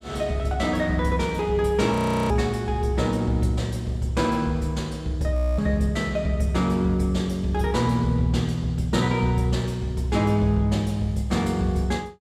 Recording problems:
frozen audio; at 2 s and at 5.5 s

